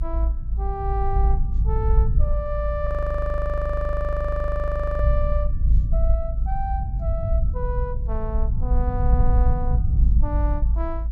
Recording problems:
rumble; below 58 Hz, SNR -7 dB
frozen audio; at 3 s for 2 s

